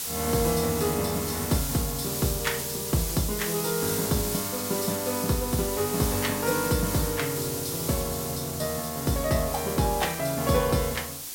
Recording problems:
hiss; SNR 3 dB

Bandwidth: 16.5 kHz